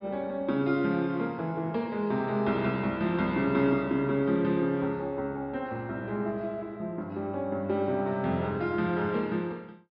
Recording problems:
low-pass filter; nothing above 5.5 kHz

